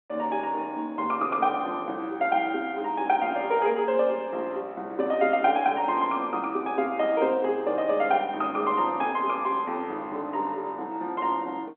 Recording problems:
phone line; 260 Hz to 3.5 kHz, G.711

